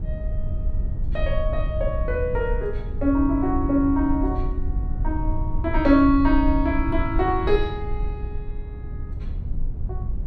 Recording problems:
low-frequency rumble; below 72 Hz, SNR 5 dB

